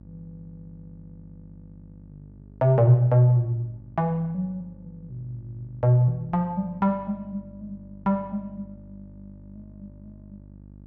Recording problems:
hum; 50 Hz, harmonics up to 600 Hz, SNR 24 dB

